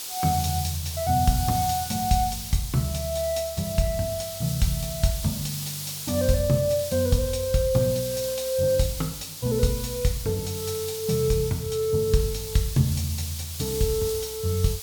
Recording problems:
hiss; SNR 8 dB

